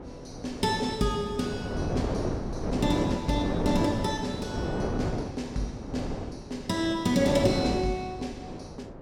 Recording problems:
wind on the microphone; below 510 Hz, SNR 4 dB

